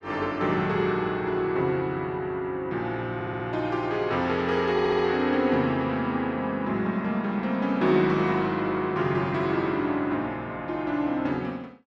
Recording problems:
stutter; at 3 s and at 4.5 s

